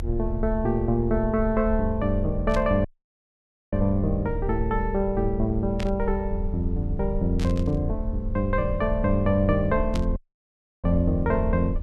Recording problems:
rumble; below 70 Hz, strongest tone 32 Hz, SNR 7 dB
burst of static; 4 times, first at 2.5 s; peak -7 dB vs average level
dropout; at 3 s for 1 s and at 10 s for 0.5 s

